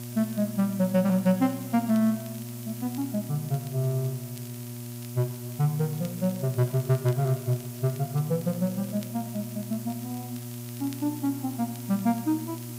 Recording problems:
electrical hum; 60 Hz, harmonics up to 960 Hz, SNR 10 dB
background hiss; slope +2 dB per octave, SNR 15 dB
crackle; vinyl, SNR 25 dB

